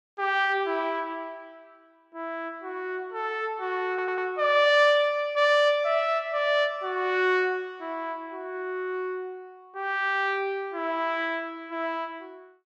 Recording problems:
audio stuttering; at 4 s

